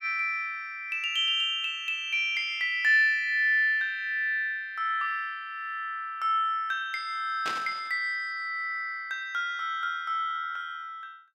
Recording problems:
burst of static; at 7.5 s; peak -3 dB vs average level

